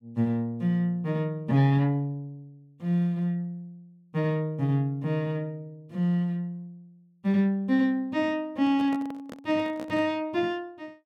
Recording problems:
microphone handling noise; from 8.5 to 10 s; peak -9 dB vs average level

